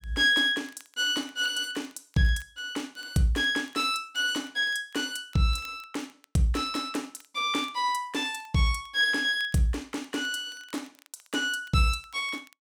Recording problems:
crackling; vinyl, SNR 30 dB

